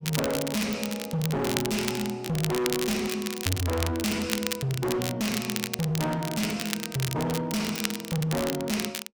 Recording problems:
distorted audio; hard clipping, signal-to-distortion ratio 6 dB
crackle; vinyl, SNR 5 dB

